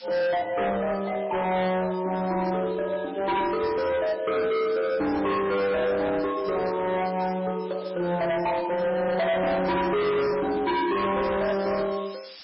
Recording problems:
codec artefacts; MP3, log-spectral distance 13 dB, nothing above 5.2 kHz
distorted audio; hard clipping, signal-to-distortion ratio 8 dB
background hiss; slope +3 dB per octave, SNR 20 dB

